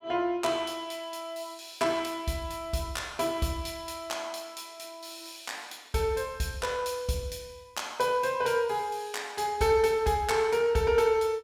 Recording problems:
none

